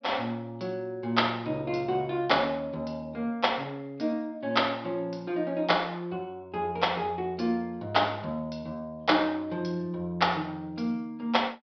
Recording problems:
treble cut off; nothing above 5.5 kHz

